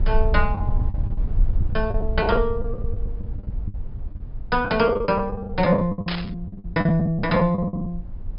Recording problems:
treble missing; nothing above 5.5 kHz
low-frequency rumble; below 66 Hz, strongest tone 22 Hz, SNR 7 dB
packet loss; 18% of the sound replaced, filled with the last packet
static burst; at 6 s; peak -2 dB vs average level

